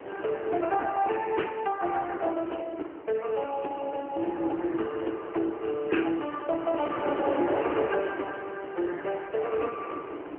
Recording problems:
telephone audio; 260 Hz to 3 kHz, AMR-NB
wind on the microphone; below 790 Hz, SNR 8 dB

